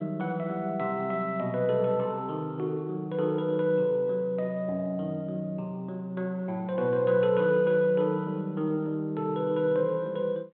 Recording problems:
phone line; 220 Hz to 3.8 kHz, G.726

